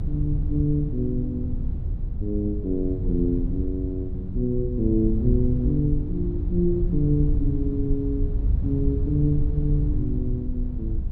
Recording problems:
rumble; below 90 Hz, SNR 2 dB

